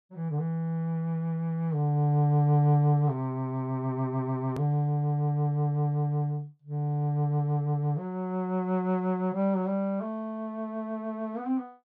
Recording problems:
hard cut with a click; at 4.5 s

